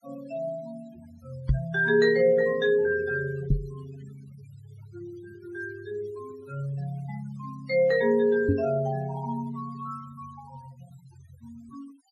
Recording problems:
denoising artefacts; signal-to-artefact ratio 23 dB
microphone bump; at 1.5 s, at 3.5 s and at 8.5 s; peak +7 dB vs average level

